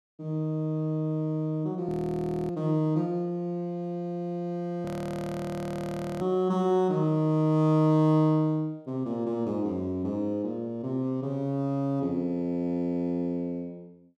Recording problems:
frozen audio; at 2 s for 0.5 s and at 5 s for 1.5 s

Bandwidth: 12.5 kHz